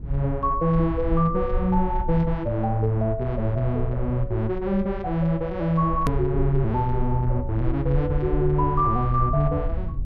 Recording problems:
rumble; below 70 Hz, SNR 8 dB
click at an edit; at 6 s

